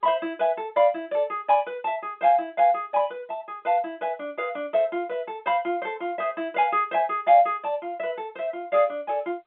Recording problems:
phone line; 260 Hz to 3.6 kHz, G.711

